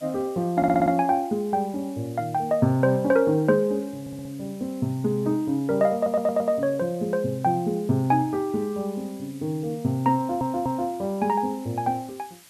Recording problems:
hiss; slope +1 dB per octave, SNR 25 dB
stutter; 4 times, first at 0.5 s

